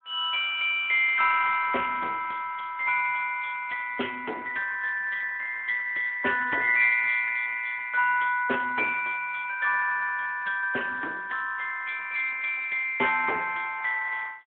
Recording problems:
telephone audio; 300 Hz to 3.4 kHz, Speex

